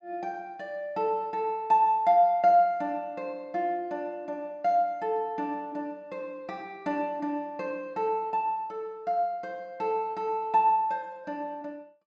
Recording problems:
low-pass filter; nothing above 7.8 kHz

